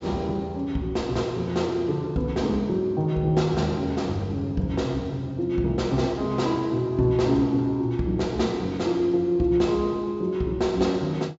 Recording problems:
treble missing; nothing above 8 kHz

